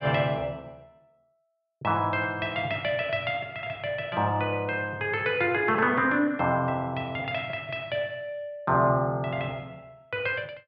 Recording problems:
none

